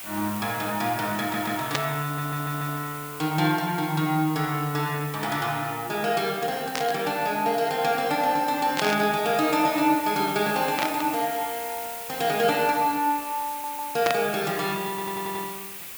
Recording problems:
hiss; SNR 10 dB
stutter; 4 times, first at 1 s
burst of static; 5 times, first at 1.5 s; peak +3 dB vs average level

